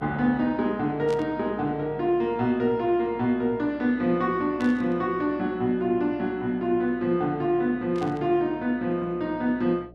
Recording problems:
hum; 60 Hz, harmonics up to 720 Hz, SNR 24 dB
static burst; at 1 s, at 4.5 s and at 8 s; peak -13 dB vs average level

